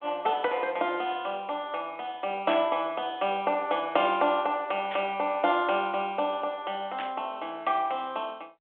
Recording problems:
phone line; 240 Hz to 3.5 kHz, G.726
static burst; at 2.5 s, at 5 s and at 7 s; peak -2 dB vs average level

